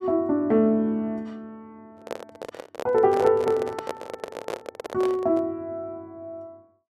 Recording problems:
microphone handling noise; from 2 to 5.5 s; peak -3 dB vs average level

